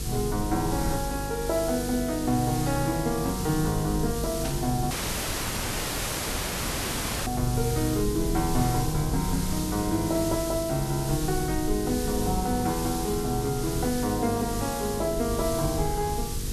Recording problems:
mains hum; 50 Hz, harmonics up to 500 Hz, SNR 8 dB
background hiss; SNR 8 dB
rumble; below 96 Hz, SNR 10 dB
static burst; at 4.5 s; peak -5 dB vs average level
dropout; at 5 s for 2.5 s

